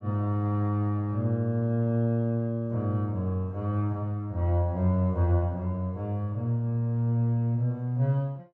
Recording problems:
treble missing; nothing above 8 kHz

